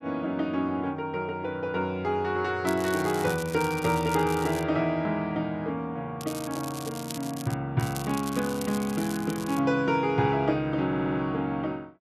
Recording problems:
crackling; from 2.5 to 4.5 s, from 6 to 7.5 s and from 8 to 9.5 s; loose cable, SNR 13 dB
stutter; at 11 s

